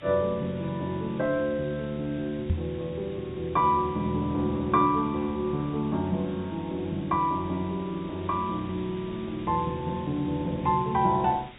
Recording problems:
treble cut off; nothing above 4 kHz
hiss; SNR 19 dB
microphone thump; at 2.5 s; peak +5 dB vs average level

